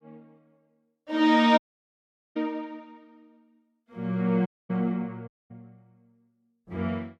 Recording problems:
dropout; at 1.5 s for 1 s, at 4.5 s and at 5.5 s

